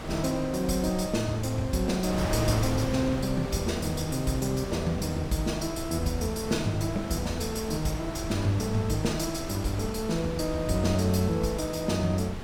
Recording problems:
wind on the microphone; below 790 Hz, SNR 8 dB

